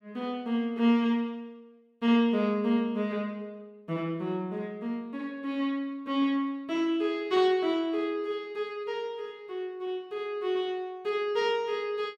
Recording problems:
none

